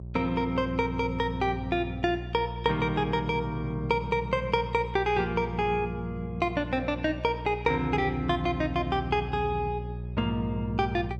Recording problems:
hum; 60 Hz, harmonics up to 540 Hz, SNR 9 dB

